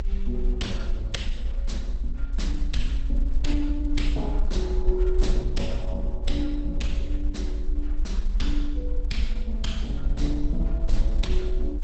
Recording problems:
lossy compression; Opus, log-spectral distance 2 dB, nothing above 8 kHz
rumble; below 50 Hz, SNR -4 dB

